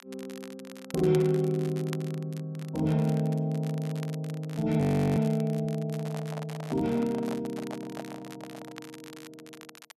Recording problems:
crackling; vinyl, SNR 20 dB
audio freezing; at 5 s
handling noise; from 6 to 9 s; peak -6 dB vs average level

